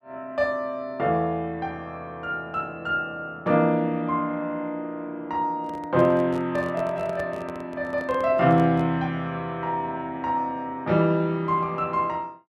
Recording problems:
handling noise; from 5.5 to 9 s; peak -9 dB vs average level

